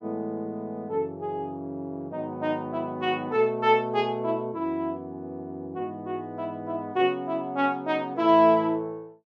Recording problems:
none

